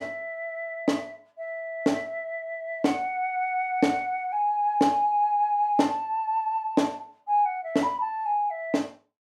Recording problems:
none

